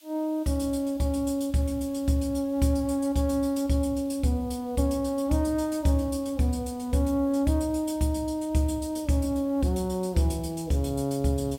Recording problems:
hiss; SNR 28 dB

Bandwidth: 16 kHz